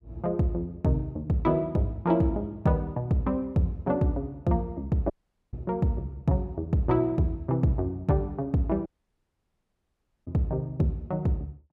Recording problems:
audio cutting out; at 5 s and at 9 s for 1.5 s

